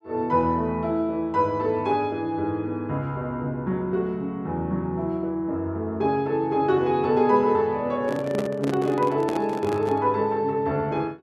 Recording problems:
microphone handling noise; from 8 to 10 s; peak -1 dB vs average level

